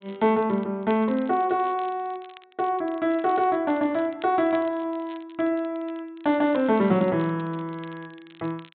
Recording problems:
low-pass filter; nothing above 4 kHz
crackle; vinyl, SNR 27 dB

